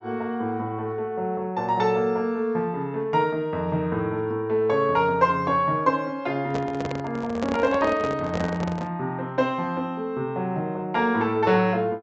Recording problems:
treble cut off; nothing above 8 kHz
microphone handling noise; from 6.5 to 9 s; peak -2 dB vs average level

